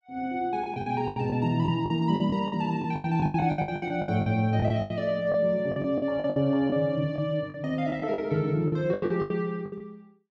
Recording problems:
lost packets; 17% of the sound replaced, filled with the last packet

